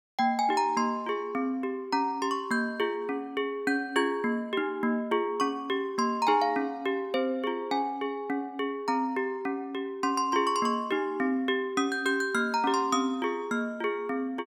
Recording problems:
none

